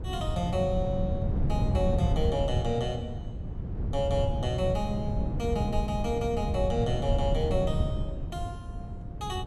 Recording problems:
wind on the microphone; below 140 Hz, SNR 0 dB

